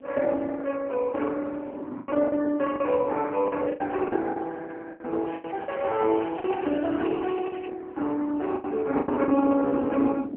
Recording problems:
telephone audio; 190 Hz to 3.4 kHz, AMR-NB
wind noise; below 370 Hz, SNR 16 dB
lost packets; 8% of the sound replaced, filled with the last packet
crackling; from 5.5 to 7.5 s; loose cable, SNR 20 dB

